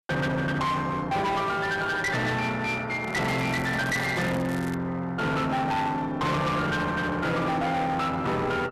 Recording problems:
distortion; hard clipping, uneven, signal-to-distortion ratio 6 dB
handling noise; from 3 to 4.5 s; peak -2 dB vs average level
crackling; from 3 to 5 s; loose cable, SNR 18 dB

